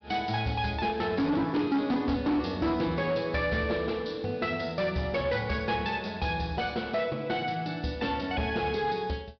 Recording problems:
treble missing; nothing above 5.5 kHz
distorted audio; hard clipping, signal-to-distortion ratio 11 dB

